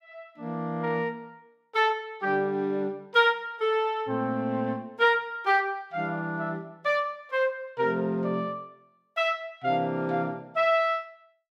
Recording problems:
none

